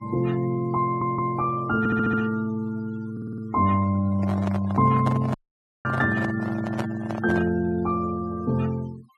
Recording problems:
noise reduction artefacts; signal-to-artefact ratio 21 dB
stutter; at 1 s, at 2 s and at 3 s
handling noise; from 4 to 7.5 s; peak -1 dB vs average level
audio cutting out; at 5.5 s for 0.5 s

